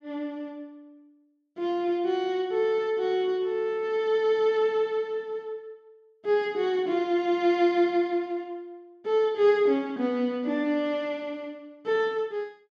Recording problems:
none

